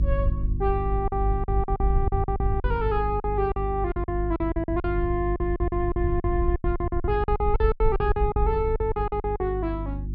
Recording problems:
low-pass filter; nothing above 5.5 kHz
hum; 50 Hz, harmonics up to 350 Hz, SNR 4 dB
wind on the microphone; below 76 Hz, SNR 4 dB
lost packets; 16% of the sound replaced, filled with silence

